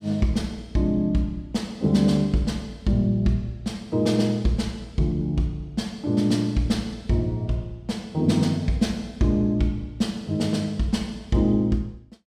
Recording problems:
none

